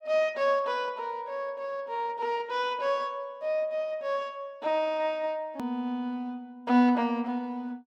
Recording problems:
click at an edit; at 5.5 s

